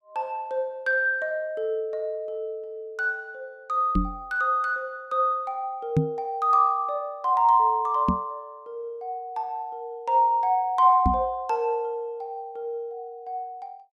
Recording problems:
microphone bump; 4 times, first at 4 s; peak +7 dB vs average level

